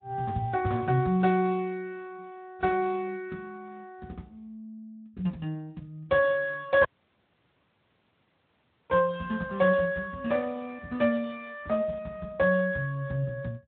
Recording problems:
treble cut off; nothing above 4 kHz
lossy compression; AAC, then Speex, log-spectral distance 2 dB
dropout; at 7 s for 2 s

